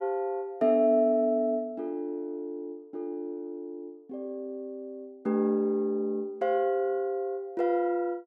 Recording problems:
none

